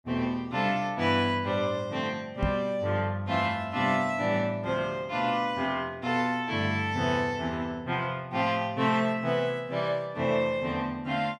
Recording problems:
microphone thump; at 2.5 s; peak +2 dB vs average level

